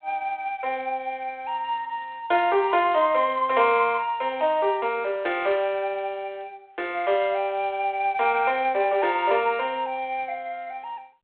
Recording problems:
phone line; 340 Hz to 3.5 kHz, G.726

